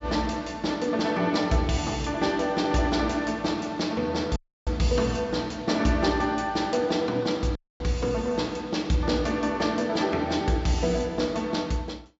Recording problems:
low-pass filter; nothing above 8 kHz
dropout; at 4.5 s and at 7.5 s

